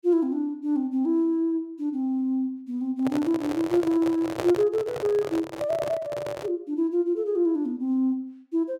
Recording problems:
handling noise; from 3 to 6.5 s; peak 0 dB vs average level

